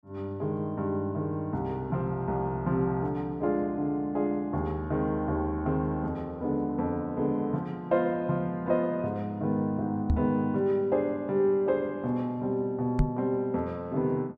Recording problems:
knock on the microphone; at 10 s and at 13 s; peak +6 dB vs average level

